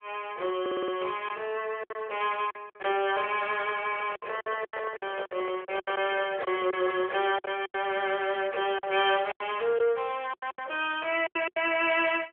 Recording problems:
phone line; 320 Hz to 3.4 kHz, AMR-NB
lost packets; 10% of the sound replaced, filled with silence
stutter; at 0.5 s
microphone handling noise; from 4 to 7 s; peak -5 dB vs average level

